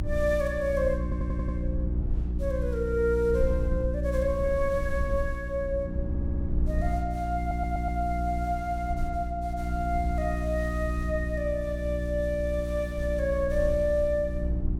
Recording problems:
hum; 60 Hz, harmonics up to 360 Hz, SNR 3 dB
rumble; below 76 Hz, SNR 8 dB
audio stuttering; at 1 s, at 6 s and at 7.5 s

